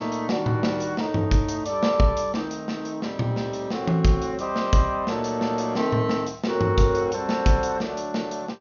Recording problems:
treble missing; nothing above 6.7 kHz

